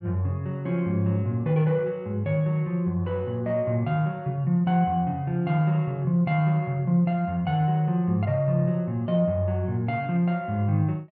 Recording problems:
none

